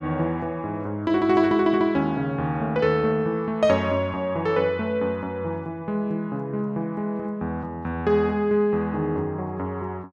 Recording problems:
none

